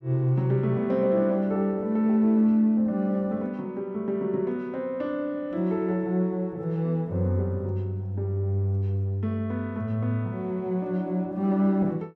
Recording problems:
none

